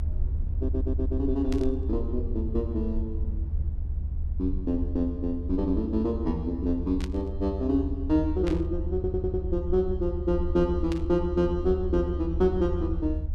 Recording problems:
low-frequency rumble; below 76 Hz, SNR 4 dB
audio stuttering; at 0.5 s and at 9 s
burst of static; 4 times, first at 1.5 s; peak -7 dB vs average level

